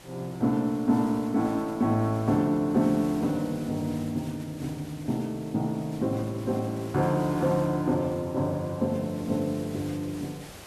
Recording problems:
background hiss; slope -4 dB per octave, SNR 19 dB

